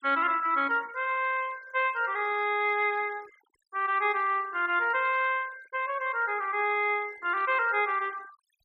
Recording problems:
denoising artefacts; signal-to-artefact ratio 24 dB

